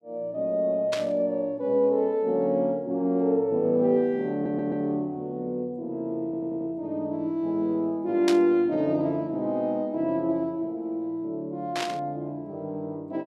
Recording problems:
burst of static; at 1 s, at 8.5 s and at 12 s; peak +1 dB vs average level
stutter; at 4.5 s and at 6 s

